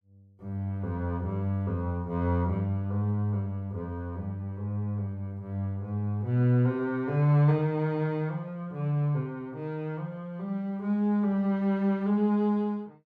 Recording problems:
none

